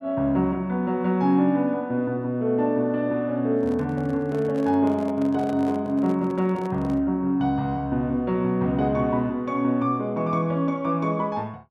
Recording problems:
microphone handling noise; from 3.5 to 7 s; peak -10 dB vs average level

